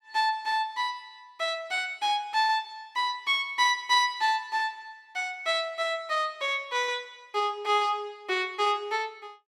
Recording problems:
none

